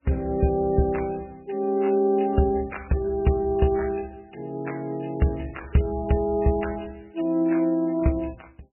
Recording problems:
lossy codec; MP3, log-spectral distance 4 dB, nothing above 2.9 kHz

